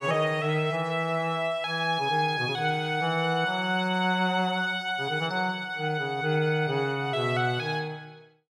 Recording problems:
none

